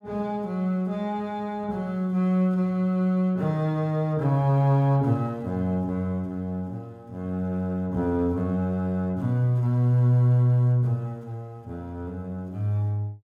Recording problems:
none

